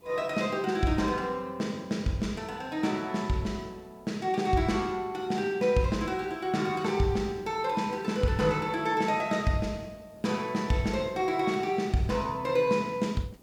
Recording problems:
background hiss; SNR 29 dB

